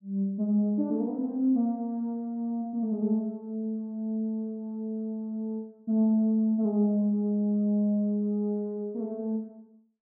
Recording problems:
none

